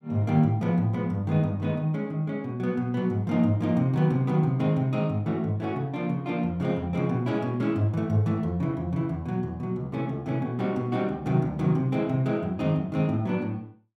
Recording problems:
none

